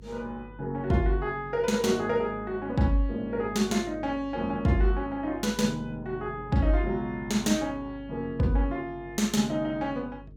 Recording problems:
hum; 50 Hz, harmonics up to 450 Hz, SNR 19 dB

